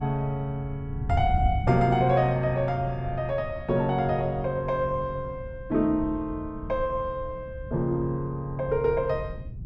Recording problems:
wind noise; below 120 Hz, SNR 9 dB

